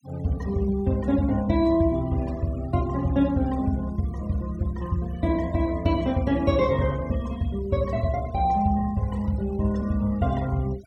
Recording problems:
noise reduction artefacts; signal-to-artefact ratio 23 dB

